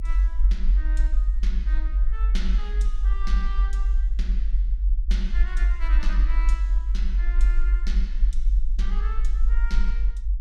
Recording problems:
low-frequency rumble; below 48 Hz, SNR -15 dB

